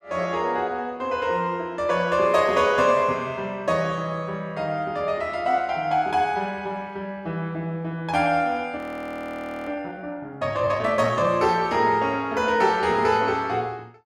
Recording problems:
frozen audio; at 9 s for 1 s

